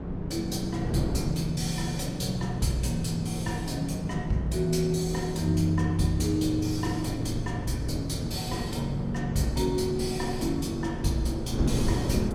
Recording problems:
wind noise; below 320 Hz, SNR 5 dB

